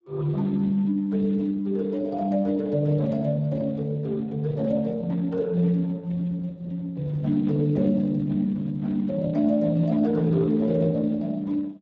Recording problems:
lossy compression; Speex, log-spectral distance 2 dB

